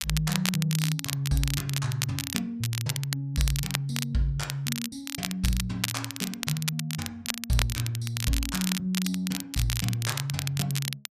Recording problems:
crackle; vinyl, SNR 3 dB

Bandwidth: 14.5 kHz